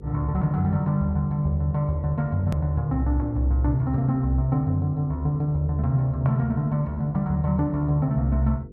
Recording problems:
hum; 50 Hz, harmonics up to 500 Hz, SNR 20 dB
click at an edit; at 2.5 s

